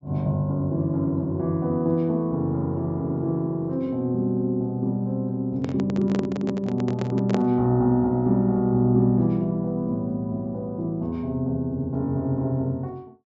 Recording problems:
treble cut off; nothing above 8 kHz
handling noise; from 5.5 to 7.5 s; peak 0 dB vs average level

